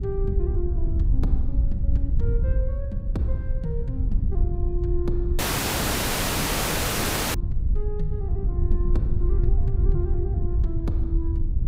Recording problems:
wind on the microphone; below 72 Hz, SNR -7 dB
audio cutting out; at 5.5 s for 2 s

